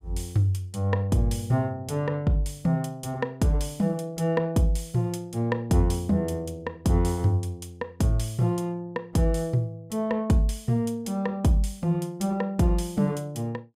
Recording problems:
none

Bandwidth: 15.5 kHz